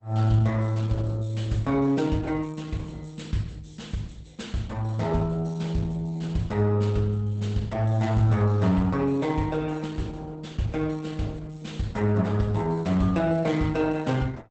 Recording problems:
codec artefacts; Opus, log-spectral distance 3 dB, nothing above 8 kHz

